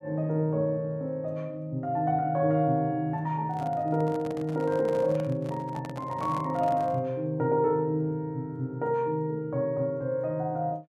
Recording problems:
microphone handling noise; from 3.5 to 7 s; peak -6 dB vs average level

